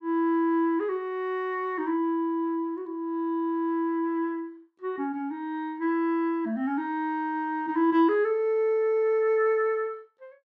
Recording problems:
none

